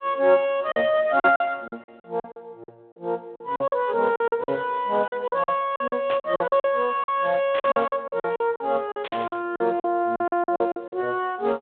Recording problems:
phone line; 190 Hz to 3.9 kHz, Speex
lost packets; 15% of the sound replaced, filled with silence
static burst; at 6 s, at 7.5 s and at 9 s; peak -5 dB vs average level

